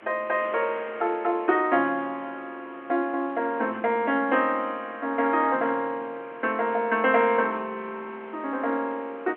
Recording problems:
telephone audio; 280 Hz to 3.3 kHz, G.711
wind on the microphone; below 2.2 kHz, SNR 21 dB

